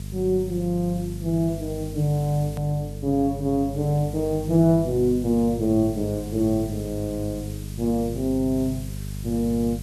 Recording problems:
hum; 50 Hz, harmonics up to 450 Hz, SNR 10 dB
hiss; slope +2 dB per octave, SNR 21 dB
edit click; at 2.5 s

